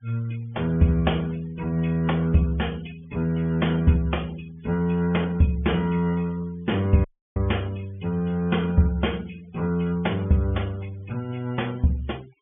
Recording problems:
low-pass filter; nothing above 3.4 kHz
noise reduction artefacts; signal-to-artefact ratio 25 dB
audio cutting out; at 7 s

